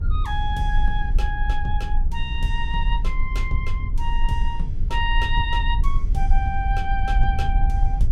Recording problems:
electrical hum; 60 Hz, harmonics up to 420 Hz, SNR 19 dB
low-frequency rumble; below 50 Hz, SNR -3 dB

